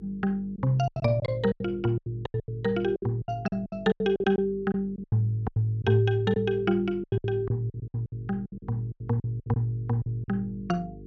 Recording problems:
hum; 50 Hz, harmonics up to 450 Hz, SNR 19 dB
lost packets; 17% of the sound replaced, filled with silence

